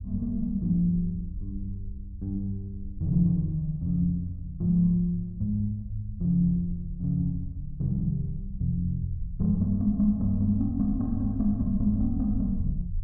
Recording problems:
low-frequency rumble; below 70 Hz, SNR 11 dB

